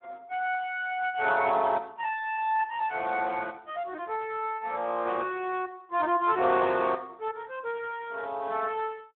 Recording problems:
phone line; 280 Hz to 3.5 kHz, Speex

